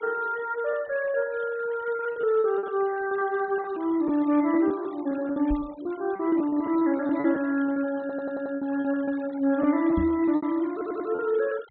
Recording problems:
low-pass filter; nothing above 4 kHz
noise reduction artefacts; signal-to-artefact ratio 22 dB
packet loss; 11% of the sound replaced, filled with repeated pitch periods
microphone bump; at 5.5 s and at 10 s; peak 0 dB vs average level
audio stuttering; at 8 s and at 11 s

